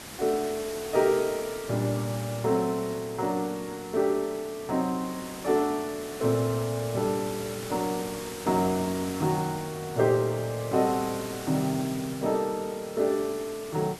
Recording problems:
hiss; slope -3 dB per octave, SNR 12 dB

